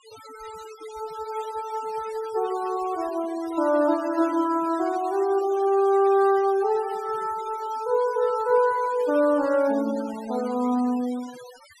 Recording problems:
denoising artefacts; signal-to-artefact ratio 20 dB

